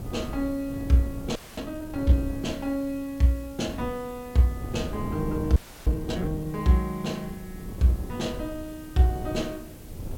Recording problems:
background hiss; slope -2 dB per octave, SNR 23 dB
wind noise; below 240 Hz, SNR 10 dB
frozen audio; at 1.5 s and at 5.5 s

